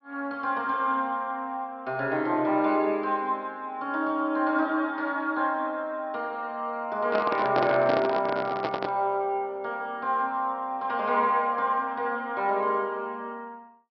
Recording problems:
treble cut off; nothing above 5.5 kHz
handling noise; from 7 to 9 s; peak +2 dB vs average level

